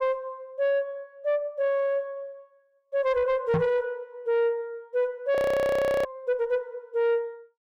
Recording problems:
distortion; soft clipping, signal-to-distortion ratio 11 dB
microphone bump; at 3.5 s; peak +6 dB vs average level
audio freezing; at 5.5 s for 0.5 s

